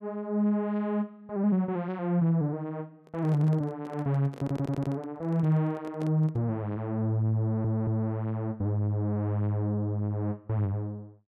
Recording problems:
microphone handling noise; from 3 to 6.5 s; peak -10 dB vs average level
audio stuttering; at 4.5 s and at 7.5 s

